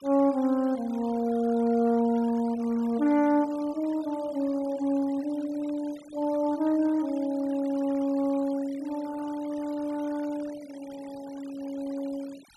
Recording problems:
denoising artefacts; signal-to-artefact ratio 22 dB

